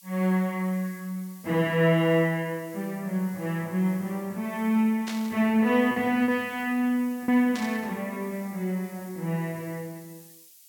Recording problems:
hiss; SNR 22 dB
lost packets; 1.2% of the sound replaced, filled with repeated pitch periods
static burst; at 5 s and at 7.5 s; peak -6 dB vs average level

